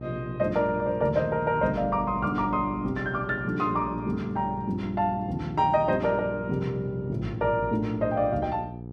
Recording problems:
hum; 60 Hz, harmonics up to 840 Hz, SNR 12 dB

